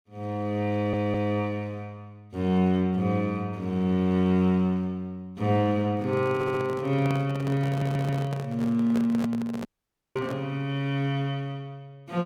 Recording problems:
audio stuttering; at 0.5 s, at 6.5 s and at 7.5 s
microphone handling noise; from 6 to 10 s; peak -3 dB vs average level
dropout; at 9.5 s for 0.5 s

